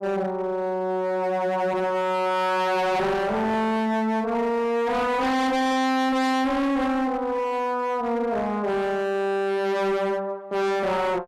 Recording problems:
distortion; hard clipping, signal-to-distortion ratio 6 dB

